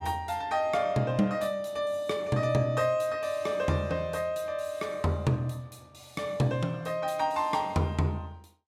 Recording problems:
none

